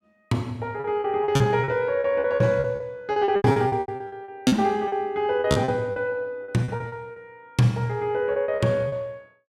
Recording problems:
packet loss; 17% of the sound replaced, filled with repeated pitch periods

